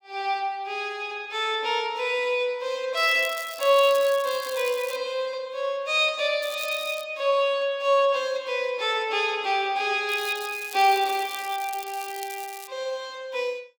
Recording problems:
crackling; from 3 to 5 s, at 6.5 s and from 10 to 13 s; loose cable, SNR 15 dB

